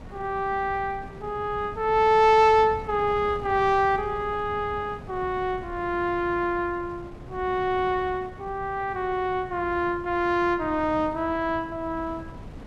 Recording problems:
wind noise; below 300 Hz, SNR 17 dB

